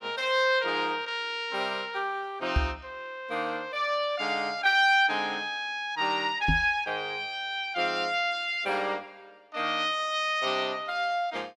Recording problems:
microphone bump; at 2.5 s and at 6.5 s; peak +5 dB vs average level

